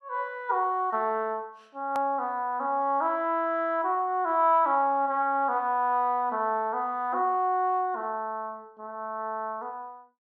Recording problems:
hard cut with a click; at 2 s

